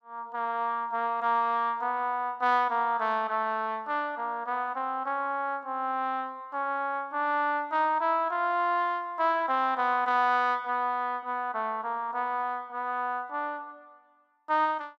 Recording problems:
none

